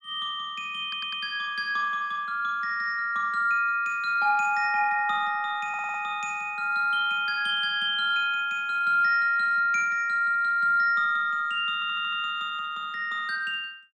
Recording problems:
stutter; at 1 s, at 5.5 s and at 12 s

